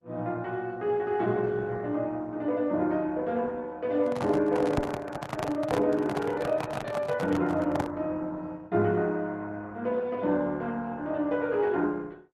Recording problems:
lossy compression; Opus, log-spectral distance 2 dB
microphone handling noise; from 4 to 8 s; peak +1 dB vs average level

